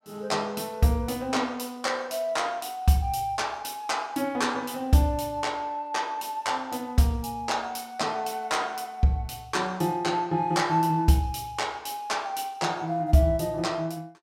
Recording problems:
none

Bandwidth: 16.5 kHz